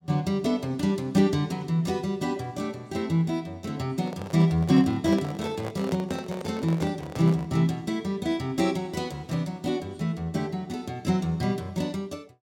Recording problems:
microphone handling noise; from 4 to 7.5 s; peak -5 dB vs average level

